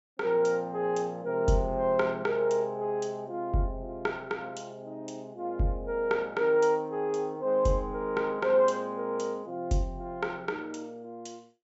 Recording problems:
low-pass filter; nothing above 8 kHz

